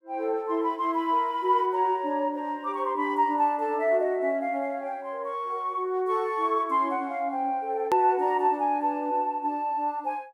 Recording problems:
edit click; at 8 s

